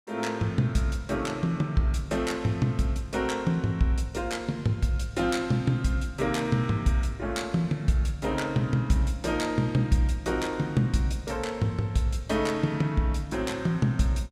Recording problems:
none

